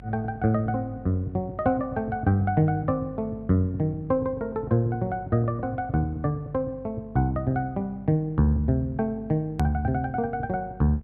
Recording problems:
electrical hum; 50 Hz, harmonics up to 650 Hz, SNR 20 dB
hard cut with a click; at 9.5 s

